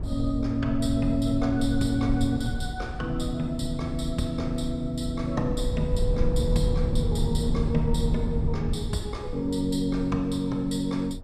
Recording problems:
rumble; below 110 Hz, SNR 4 dB

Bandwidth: 14.5 kHz